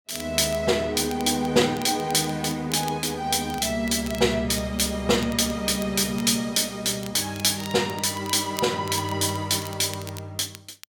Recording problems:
crackle; vinyl, SNR 19 dB

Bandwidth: 17 kHz